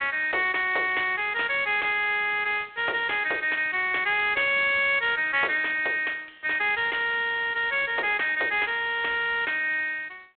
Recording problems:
phone line; 320 Hz to 3.7 kHz, G.726

